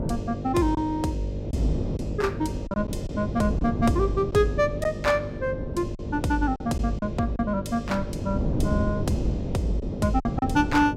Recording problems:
hum; 50 Hz, harmonics up to 600 Hz, SNR 9 dB
wind noise; below 270 Hz, SNR 6 dB
packet loss; 4% of the sound replaced, filled with silence

